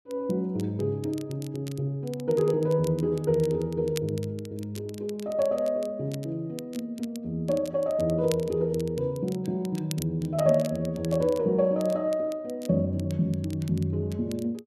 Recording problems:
crackle; vinyl, SNR 19 dB

